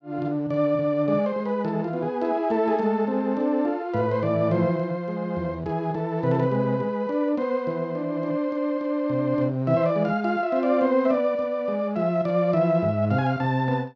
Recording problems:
none

